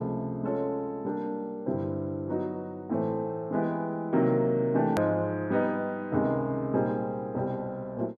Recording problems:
click at an edit; at 5 s

